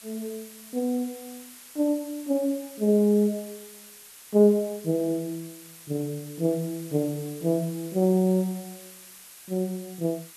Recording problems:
hiss; slope +2 dB per octave, SNR 18 dB

